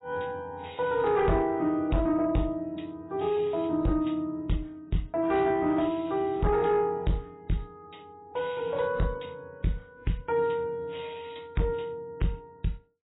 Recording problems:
codec artefacts; AAC, log-spectral distance 4 dB, nothing above 3.8 kHz
distortion; soft clipping, signal-to-distortion ratio 11 dB

